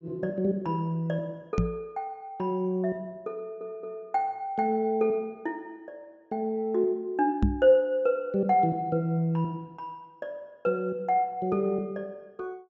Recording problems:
treble cut off; nothing above 8 kHz
microphone bump; at 1.5 s and at 7.5 s; peak +7 dB vs average level
audio stuttering; at 3.5 s

